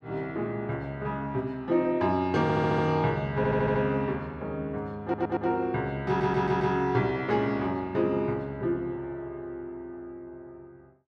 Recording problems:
stutter; 4 times, first at 2.5 s

